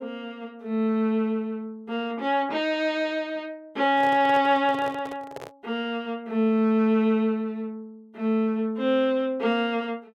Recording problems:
microphone handling noise; from 4 to 5.5 s; peak -9 dB vs average level

